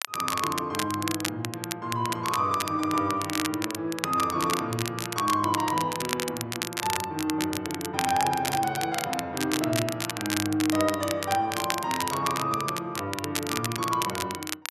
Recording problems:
crackling; vinyl, SNR 4 dB

